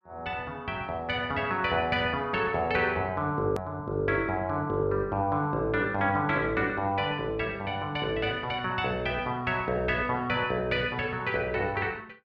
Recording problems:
hard cut with a click; at 3.5 s

